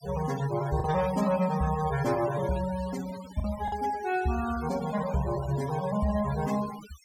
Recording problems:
noise reduction artefacts; signal-to-artefact ratio 14 dB
lost packets; 1.7% of the sound replaced, filled with the last packet

